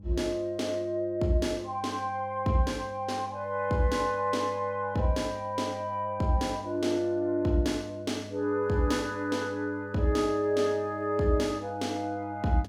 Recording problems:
hum; 50 Hz, harmonics up to 500 Hz, SNR 16 dB

